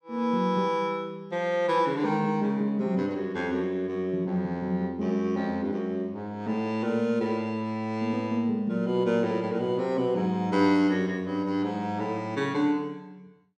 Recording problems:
none

